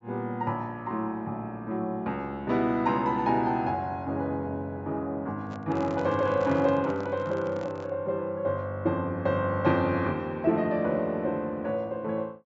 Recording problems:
treble missing; nothing above 8 kHz
handling noise; from 5.5 to 8 s; peak -8 dB vs average level

